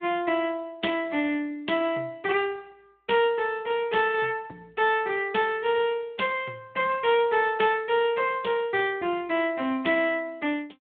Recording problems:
phone line; 260 Hz to 3.5 kHz, Speex

